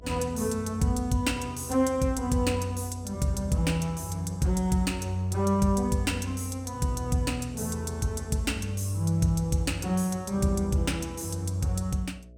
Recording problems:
hum; 60 Hz, harmonics up to 660 Hz, SNR 22 dB

